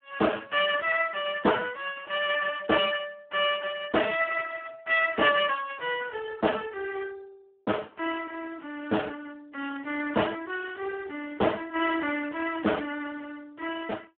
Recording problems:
telephone audio; 260 Hz to 3.3 kHz, Speex

